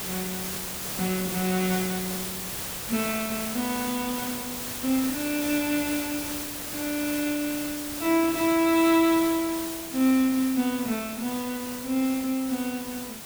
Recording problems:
background hiss; slope -2 dB per octave, SNR 6 dB

